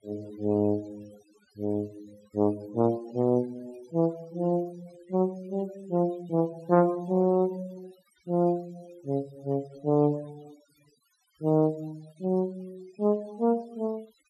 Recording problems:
denoising artefacts; signal-to-artefact ratio 25 dB

